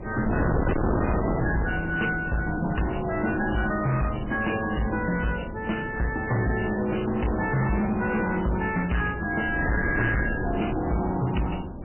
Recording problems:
lossy compression; MP3, log-spectral distance 6 dB, nothing above 3 kHz
distorted audio; hard clipping, signal-to-distortion ratio 6 dB
wind on the microphone; below 480 Hz, SNR 5 dB

